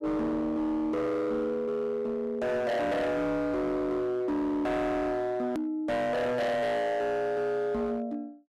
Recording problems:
distortion; hard clipping, signal-to-distortion ratio 8 dB
click at an edit; at 5.5 s

